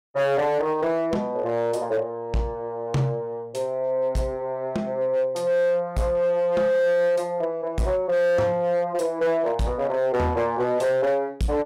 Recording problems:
distortion; hard clipping, signal-to-distortion ratio 12 dB

